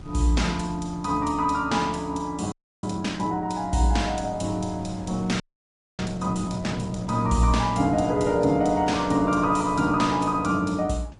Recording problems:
lossy compression; MP3, log-spectral distance 2 dB, nothing above 10.7 kHz
wind noise; below 250 Hz, SNR 18 dB
frozen audio; at 2.5 s and at 5.5 s for 0.5 s

